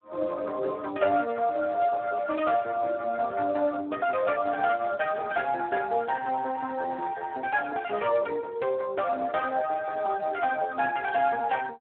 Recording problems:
telephone audio; 320 Hz to 2.3 kHz, Speex

